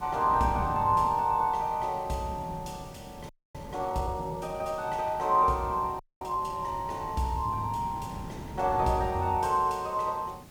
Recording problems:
hiss; slope -1 dB per octave, SNR 27 dB
wind on the microphone; below 290 Hz, SNR 15 dB
frozen audio; at 3.5 s and at 6 s

